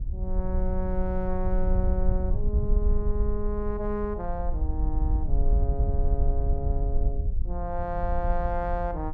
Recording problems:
wind on the microphone; below 58 Hz, SNR -4 dB

